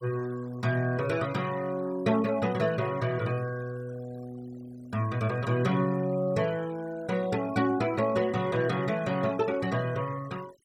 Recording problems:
noise reduction artefacts; signal-to-artefact ratio 20 dB

